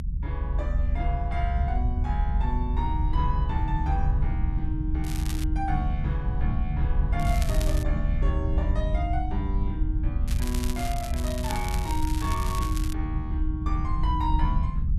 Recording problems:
low-frequency rumble; below 74 Hz, SNR -5 dB
crackle; at 5 s, at 7 s and from 10 to 13 s; loose cable, SNR 6 dB

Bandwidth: 13 kHz